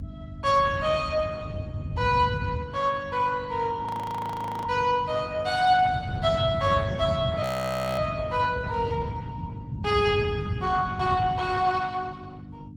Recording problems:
lossy compression; Opus, log-spectral distance 3 dB, nothing above 19.5 kHz
electrical hum; 50 Hz, harmonics up to 300 Hz, SNR 18 dB
wind on the microphone; below 150 Hz, SNR 7 dB
frozen audio; at 4 s for 1 s and at 7.5 s for 0.5 s

